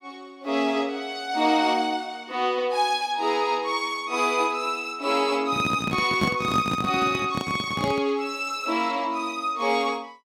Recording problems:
microphone handling noise; from 5.5 to 8 s; peak +3 dB vs average level

